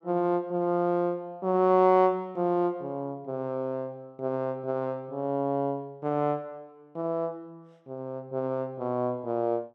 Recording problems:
none

